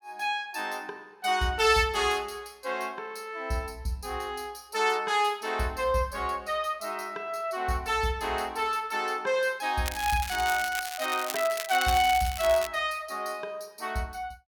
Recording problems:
crackling; from 10 to 13 s; loose cable, SNR 8 dB

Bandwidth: 18 kHz